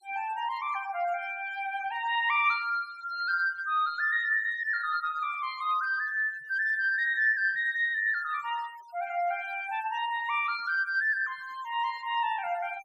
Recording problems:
denoising artefacts; signal-to-artefact ratio 21 dB

